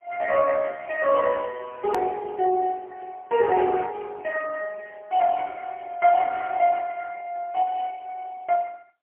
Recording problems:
telephone audio; 300 Hz to 3 kHz, AMR-NB, then MP3
edit click; at 2 s

